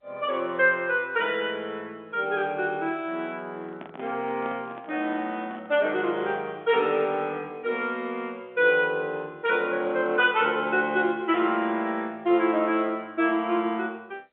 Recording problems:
telephone audio; 130 Hz to 3.5 kHz, G.711
microphone handling noise; from 3.5 to 6.5 s; peak -10 dB vs average level

